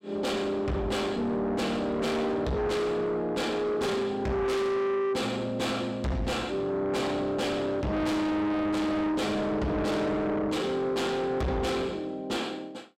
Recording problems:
distortion; soft clipping, signal-to-distortion ratio 6 dB

